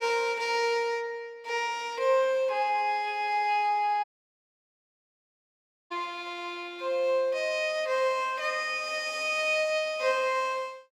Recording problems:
audio cutting out; at 4 s for 2 s

